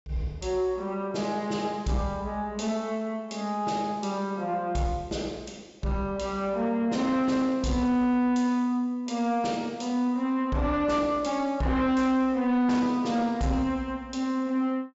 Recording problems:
treble missing; nothing above 8 kHz
distortion; soft clipping, signal-to-distortion ratio 12 dB

